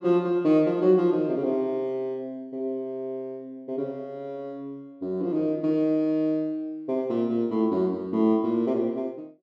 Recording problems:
none

